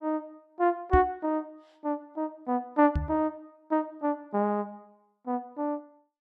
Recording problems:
microphone bump; at 1 s and at 3 s; peak +6 dB vs average level

